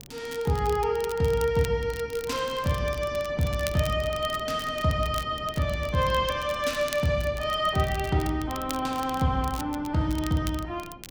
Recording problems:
wind noise; below 360 Hz, SNR 18 dB
crackle; vinyl, SNR 16 dB

